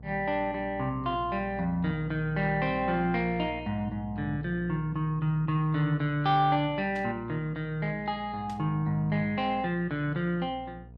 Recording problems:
hum; 60 Hz, harmonics up to 720 Hz, SNR 17 dB
burst of static; at 7 s and at 8.5 s; peak -15 dB vs average level

